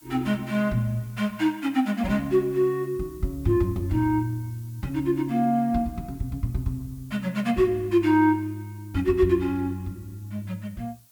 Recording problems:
background hiss; SNR 27 dB

